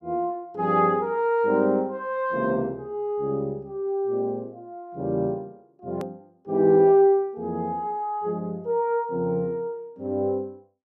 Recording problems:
click at an edit; at 6 s

